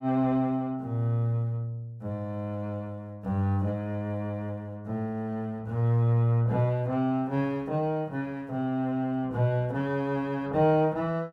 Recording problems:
none

